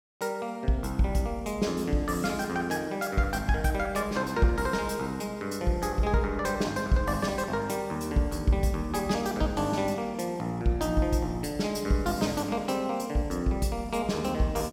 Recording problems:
none

